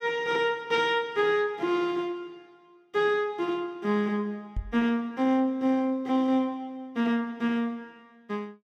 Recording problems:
microphone bump; at 4.5 s; peak -3 dB vs average level

